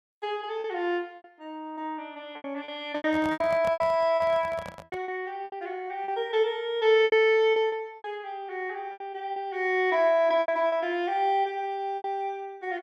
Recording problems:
lost packets; 11% of the sound replaced, filled with repeated pitch periods
handling noise; from 3 to 5 s; peak -6 dB vs average level

